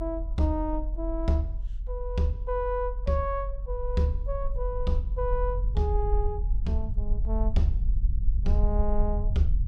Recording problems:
low-frequency rumble; below 46 Hz, SNR 1 dB

